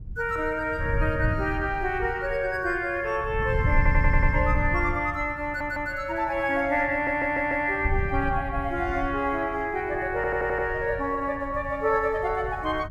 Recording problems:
wind on the microphone; below 100 Hz, SNR 6 dB
audio stuttering; 4 times, first at 4 s

